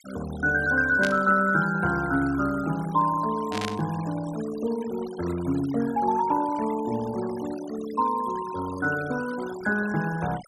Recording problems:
noise reduction artefacts; signal-to-artefact ratio 17 dB
static burst; at 1 s and at 3.5 s; peak -2 dB vs average level

